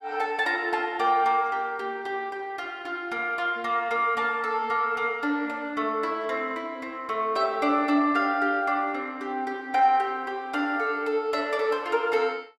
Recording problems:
none

